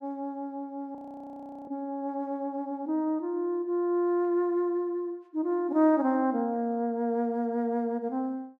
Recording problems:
frozen audio; at 1 s for 0.5 s

